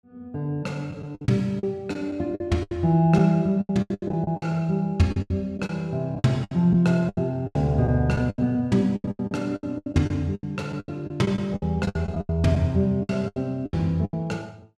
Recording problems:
lost packets; 17% of the sound replaced, filled with the last packet

